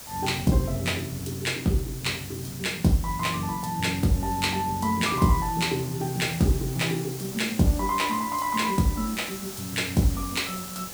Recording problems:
background hiss; SNR 12 dB

